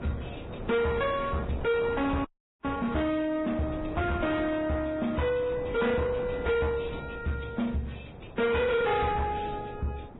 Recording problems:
codec artefacts; AAC, then Vorbis, log-spectral distance 4 dB, nothing above 3.8 kHz
distorted audio; soft clipping, signal-to-distortion ratio 8 dB
wind noise; below 600 Hz, SNR 12 dB
frozen audio; at 2.5 s

